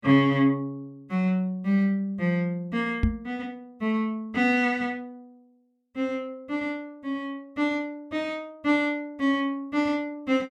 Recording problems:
knock on the microphone; at 3 s; peak +7 dB vs average level

